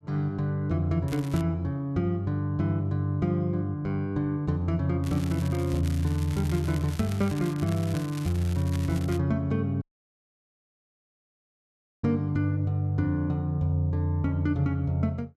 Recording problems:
crackling; at 1 s, from 5 to 7.5 s and from 7.5 to 9 s; loose cable, SNR 17 dB
dropout; at 10 s for 2 s

